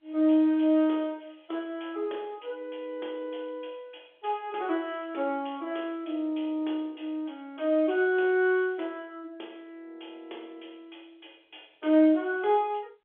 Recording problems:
telephone audio; 260 Hz to 3.6 kHz, G.711

